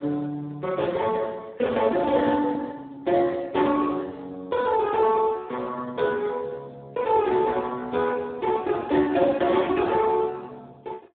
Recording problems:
phone line; 240 Hz to 2.5 kHz, Speex

